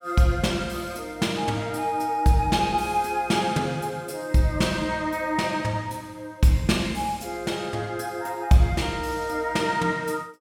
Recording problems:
none

